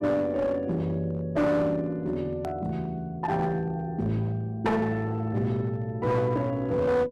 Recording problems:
distorted audio; hard clipping, uneven, signal-to-distortion ratio 10 dB
click at an edit; at 2.5 s

